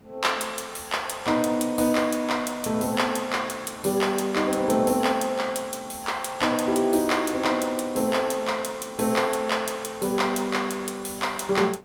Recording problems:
hiss; slope -7 dB per octave, SNR 30 dB

